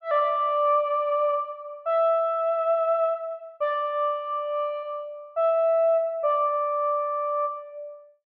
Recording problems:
none

